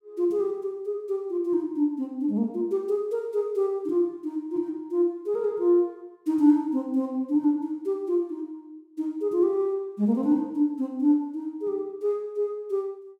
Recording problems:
none

